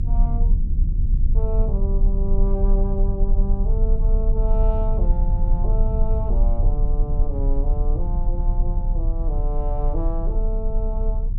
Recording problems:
low-frequency rumble; below 44 Hz, strongest tone 32 Hz, SNR -9 dB

